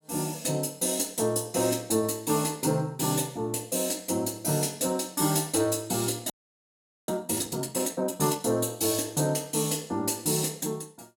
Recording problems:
audio freezing; at 6.5 s for 1 s

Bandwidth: 17 kHz